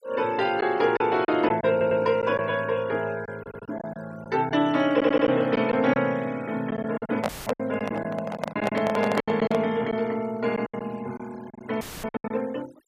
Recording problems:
denoising artefacts; signal-to-artefact ratio 22 dB
lost packets; 8% of the sound replaced, filled with silence
audio stuttering; at 1.5 s, at 3.5 s and at 5 s
handling noise; from 7 to 9.5 s; peak +2 dB vs average level
audio cutting out; at 7.5 s and at 12 s; filled with static

